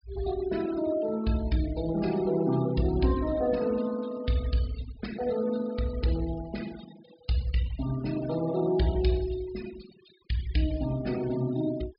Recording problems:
treble missing; nothing above 5.5 kHz
denoising artefacts; signal-to-artefact ratio 16 dB

